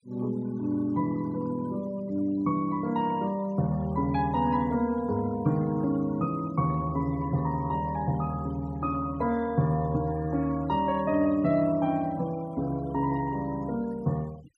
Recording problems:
noise reduction artefacts; signal-to-artefact ratio 23 dB

